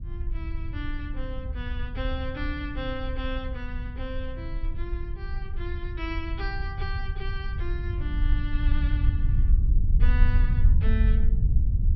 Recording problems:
treble missing; nothing above 5.7 kHz
low-frequency rumble; below 68 Hz, SNR -9 dB

